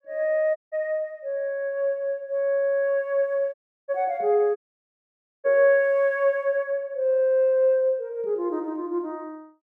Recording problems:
audio cutting out; at 0.5 s, at 3.5 s and at 4.5 s for 1 s

